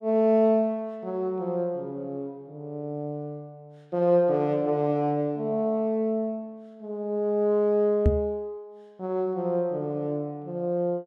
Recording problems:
knock on the microphone; at 8 s; peak +8 dB vs average level

